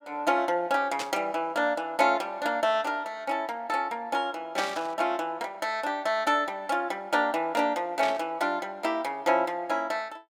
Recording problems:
static burst; at 1 s, at 4.5 s and at 8 s; peak 0 dB vs average level

